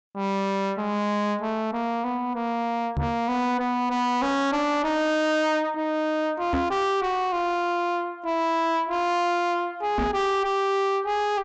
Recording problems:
treble cut off; nothing above 8 kHz
distorted audio; soft clipping, signal-to-distortion ratio 6 dB
microphone thump; at 3 s, at 6.5 s and at 10 s; peak +4 dB vs average level

